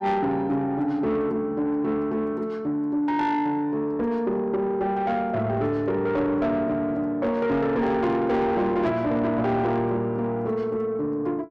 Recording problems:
distorted audio; soft clipping, signal-to-distortion ratio 11 dB

